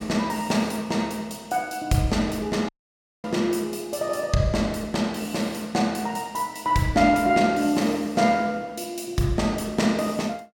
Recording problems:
dropout; at 2.5 s for 0.5 s

